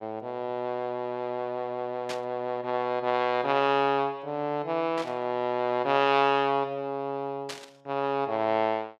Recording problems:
burst of static; at 2 s, at 5 s and at 7.5 s; peak -4 dB vs average level

